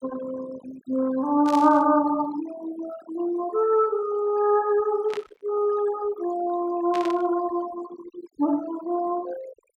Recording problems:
denoising artefacts; signal-to-artefact ratio 17 dB
burst of static; at 1.5 s, at 5 s and at 7 s; peak -8 dB vs average level

